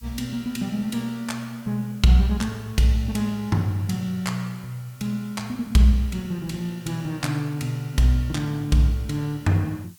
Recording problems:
hiss; SNR 26 dB

